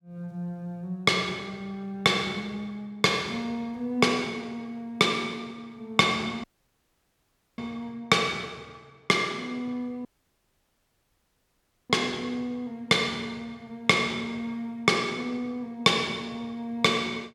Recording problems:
dropout; at 6.5 s for 1 s and at 10 s for 2 s

